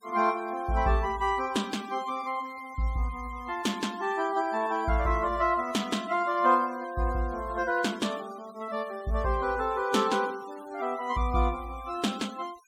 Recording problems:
noise reduction artefacts; signal-to-artefact ratio 21 dB

